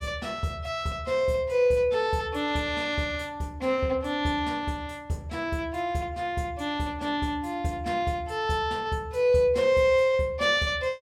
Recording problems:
none

